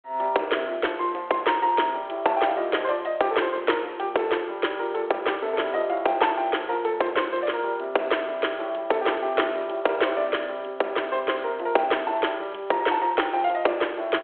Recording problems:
phone line; 320 Hz to 3.4 kHz, G.726

